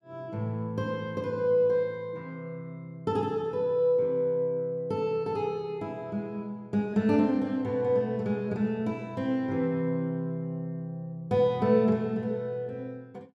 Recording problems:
none

